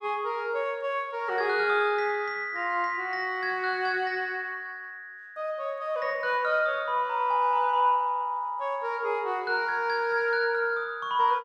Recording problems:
none

